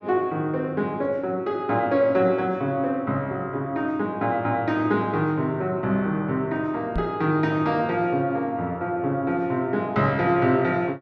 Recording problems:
microphone bump; at 7 s; peak 0 dB vs average level

